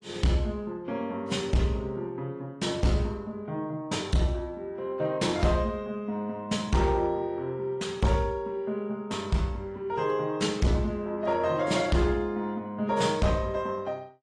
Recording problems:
lossy codec; AAC, log-spectral distance 2 dB, nothing above 10.4 kHz
distorted audio; hard clipping, signal-to-distortion ratio 11 dB

